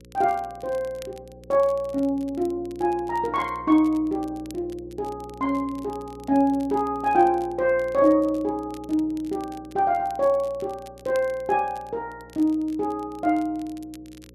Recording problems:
hum; 60 Hz, harmonics up to 540 Hz, SNR 22 dB
crackle; vinyl, SNR 27 dB

